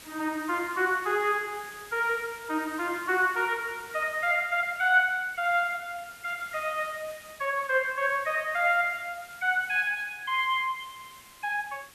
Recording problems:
hiss; slope 0 dB per octave, SNR 20 dB

